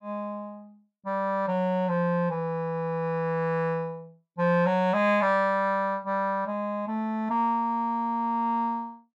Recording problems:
none

